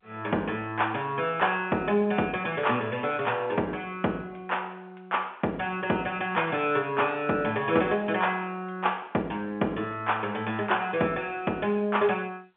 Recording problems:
telephone audio; 240 Hz to 3.4 kHz, G.711

